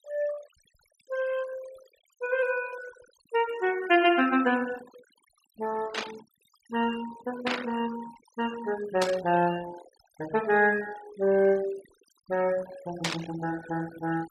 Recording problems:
noise reduction artefacts; signal-to-artefact ratio 17 dB
burst of static; 4 times, first at 6 s; peak +4 dB vs average level

